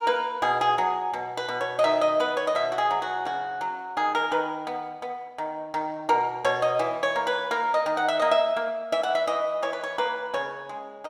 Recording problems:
none

